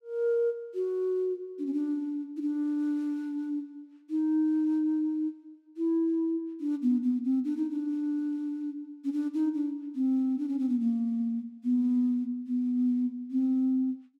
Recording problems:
none

